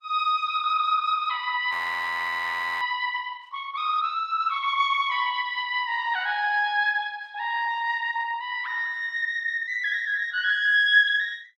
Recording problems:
lossy compression; Opus, log-spectral distance 3 dB, nothing above 16.6 kHz
audio freezing; at 1.5 s for 1 s

